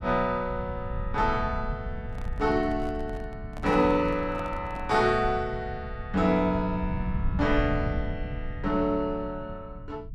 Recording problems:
rumble; below 110 Hz, SNR 9 dB
handling noise; from 2 to 5 s; peak -10 dB vs average level

